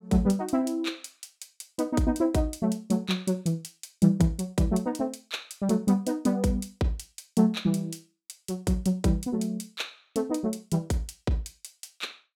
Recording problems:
none

